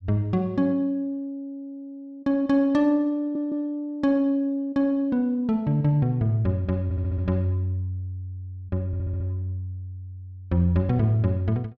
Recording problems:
audio stuttering; at 3 s, at 7 s and at 9 s

